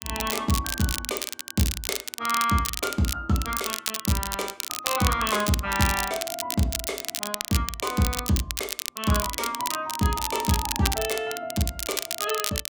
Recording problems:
crackle; vinyl, SNR 3 dB

